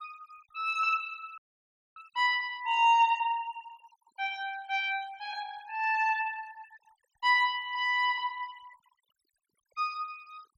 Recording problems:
denoising artefacts; signal-to-artefact ratio 24 dB
audio cutting out; at 1.5 s for 0.5 s

